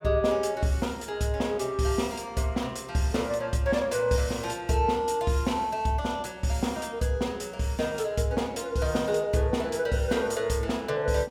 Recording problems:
none

